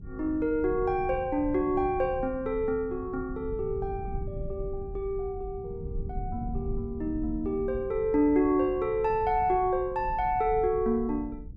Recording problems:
rumble; below 110 Hz, SNR 12 dB

